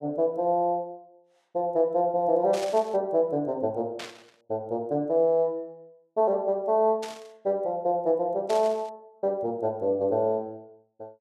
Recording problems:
static burst; 4 times, first at 2.5 s; peak -8 dB vs average level

